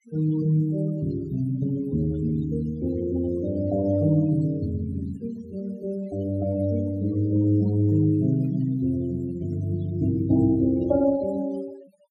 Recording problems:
noise reduction artefacts; signal-to-artefact ratio 23 dB

